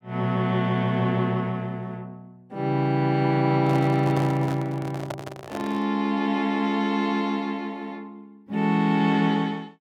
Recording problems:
handling noise; from 3.5 to 6 s; peak -4 dB vs average level

